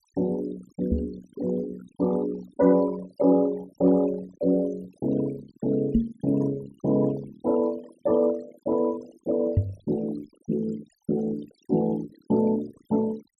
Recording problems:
denoising artefacts; signal-to-artefact ratio 18 dB
microphone thump; at 1 s, at 6 s and at 9.5 s; peak +8 dB vs average level

